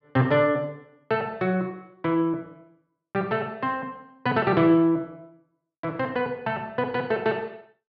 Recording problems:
none

